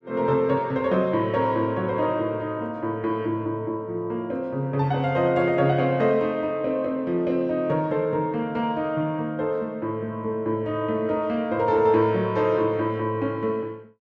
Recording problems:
none

